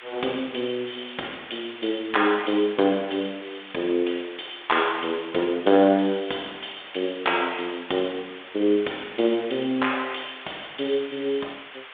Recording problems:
telephone audio; 320 Hz to 3.6 kHz, G.726
hiss; SNR 16 dB

